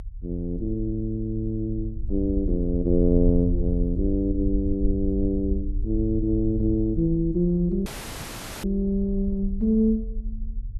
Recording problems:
rumble; below 62 Hz, SNR 7 dB
audio cutting out; at 8 s for 1 s

